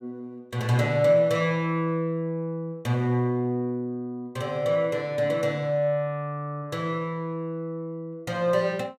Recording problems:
none

